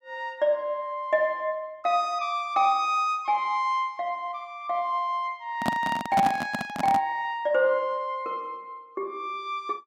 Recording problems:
microphone handling noise; from 5.5 to 7 s; peak +4 dB vs average level

